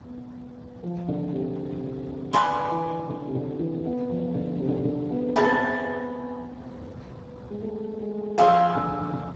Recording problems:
lossy compression; Speex, log-spectral distance 3 dB
wind on the microphone; below 410 Hz, SNR 18 dB

